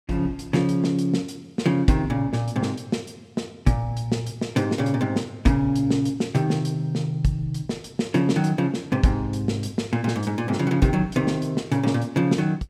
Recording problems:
none

